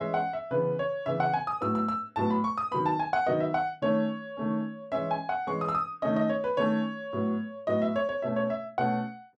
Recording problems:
none

